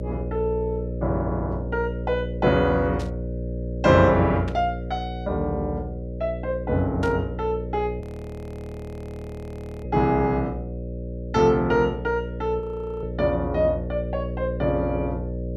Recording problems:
hum; 60 Hz, harmonics up to 600 Hz, SNR 7 dB
burst of static; at 3 s, at 4.5 s and at 7 s; peak -11 dB vs average level
frozen audio; at 8 s for 2 s and at 13 s

